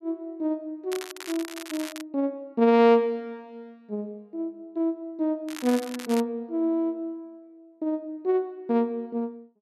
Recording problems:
crackle; from 1 to 2 s and at 5.5 s; loose cable, SNR 12 dB

